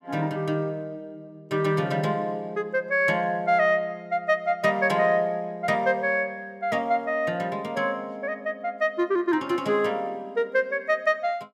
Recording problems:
none

